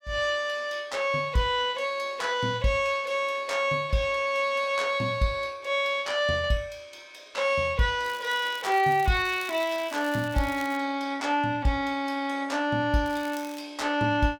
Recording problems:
crackling; from 8 to 11 s and at 13 s; loose cable, SNR 19 dB

